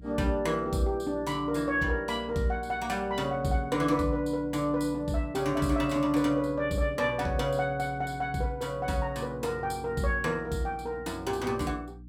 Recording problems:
electrical hum; 60 Hz, harmonics up to 300 Hz, SNR 18 dB

